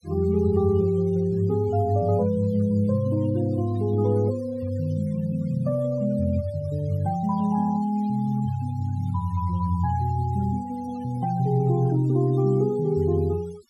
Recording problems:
denoising artefacts; signal-to-artefact ratio 24 dB

